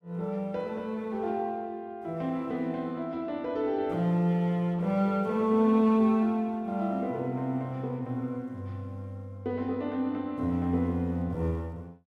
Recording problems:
none

